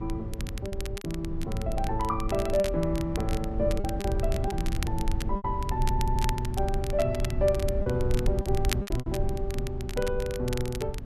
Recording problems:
rumble; below 86 Hz, SNR 2 dB
wind noise; below 230 Hz, SNR 15 dB
crackling; vinyl, SNR 11 dB
lost packets; 6% of the sound replaced, filled with repeated pitch periods
stutter; at 6 s

